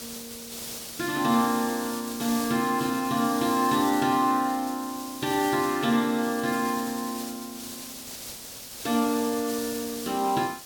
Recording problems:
background hiss; SNR 10 dB

